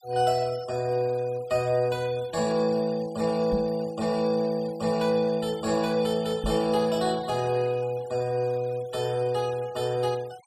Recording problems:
denoising artefacts; signal-to-artefact ratio 21 dB
microphone bump; at 3.5 s and at 6.5 s; peak 0 dB vs average level

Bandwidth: 15 kHz